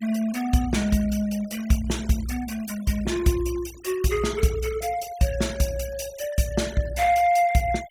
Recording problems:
denoising artefacts; signal-to-artefact ratio 18 dB

